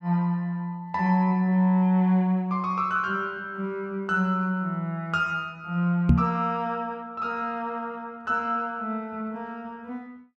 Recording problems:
microphone bump; at 6 s; peak +10 dB vs average level

